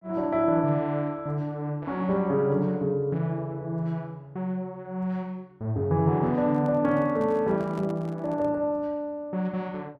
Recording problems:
handling noise; from 6.5 to 8.5 s; peak -12 dB vs average level

